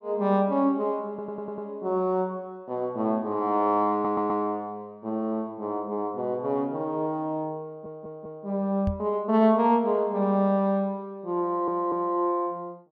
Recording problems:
audio stuttering; 4 times, first at 1 s
microphone thump; at 9 s; peak +1 dB vs average level

